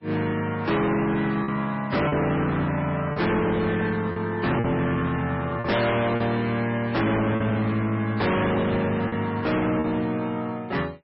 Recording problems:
lossy compression; MP3, log-spectral distance 3 dB, nothing above 5.5 kHz
distortion; hard clipping, signal-to-distortion ratio 6 dB
packet loss; 4% of the sound replaced, filled with repeated pitch periods

